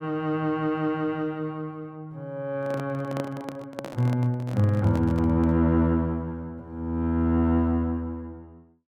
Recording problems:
microphone handling noise; from 2.5 to 5.5 s; peak -5 dB vs average level

